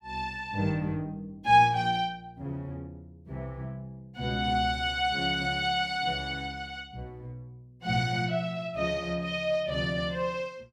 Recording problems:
none

